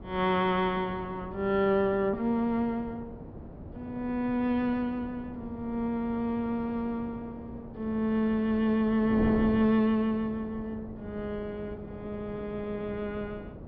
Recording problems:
treble cut off; nothing above 5.8 kHz
wind noise; below 410 Hz, SNR 13 dB

